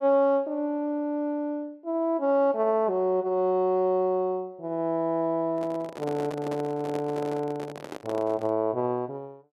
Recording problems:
microphone handling noise; from 5.5 to 8.5 s; peak -6 dB vs average level

